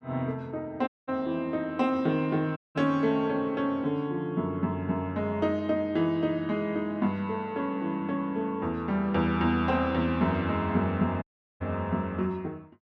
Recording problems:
dropout; at 1 s, at 2.5 s and at 11 s

